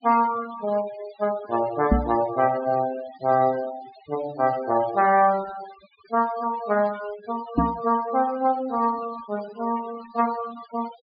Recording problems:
low-pass filter; nothing above 4.8 kHz
noise reduction artefacts; signal-to-artefact ratio 17 dB
microphone bump; at 2 s and at 7.5 s; peak +8 dB vs average level

